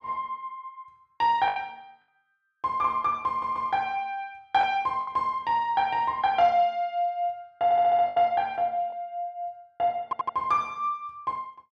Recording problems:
lost packets; 3% of the sound replaced, filled with the last packet
audio stuttering; at 3.5 s, at 7.5 s and at 10 s

